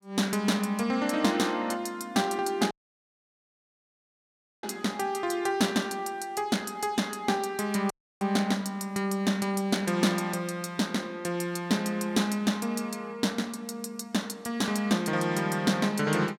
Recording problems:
audio cutting out; at 2.5 s for 2 s and at 8 s

